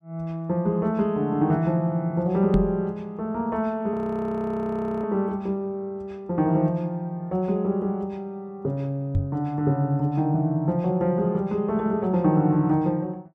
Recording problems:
microphone bump; at 2.5 s and at 9 s; peak +5 dB vs average level
frozen audio; at 4 s for 1 s

